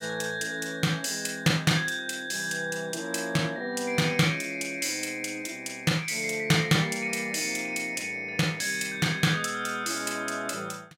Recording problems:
none

